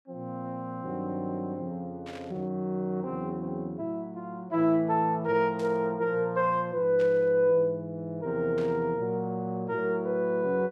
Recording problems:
burst of static; 4 times, first at 2 s; peak -13 dB vs average level

